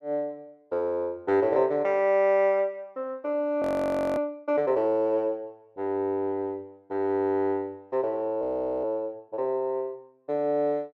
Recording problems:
frozen audio; at 3.5 s for 0.5 s and at 8.5 s

